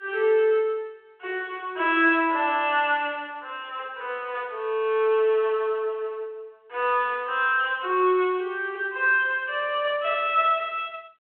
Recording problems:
telephone audio; 300 Hz to 3.5 kHz, G.726

